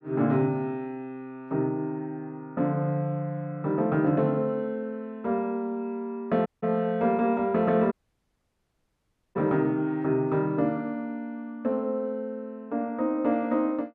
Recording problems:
audio cutting out; at 6.5 s and at 8 s for 1.5 s

